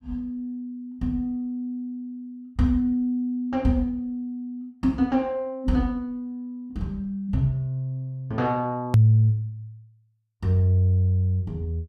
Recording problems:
edit click; at 9 s

